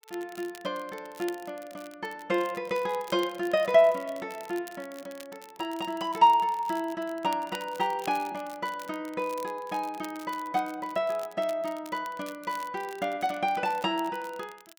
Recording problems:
crackling; vinyl, SNR 21 dB

